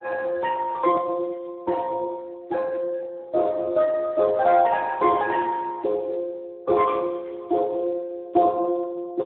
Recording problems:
telephone audio; 260 Hz to 2.1 kHz, Speex

